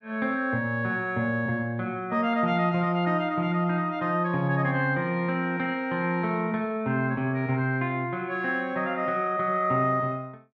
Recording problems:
none

